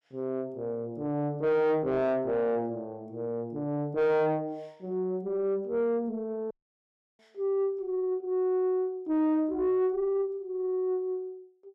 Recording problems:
distorted audio; soft clipping, signal-to-distortion ratio 6 dB
dropout; at 6.5 s for 0.5 s

